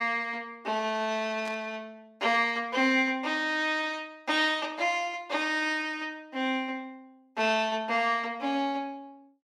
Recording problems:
burst of static; at 1.5 s; peak -9 dB vs average level

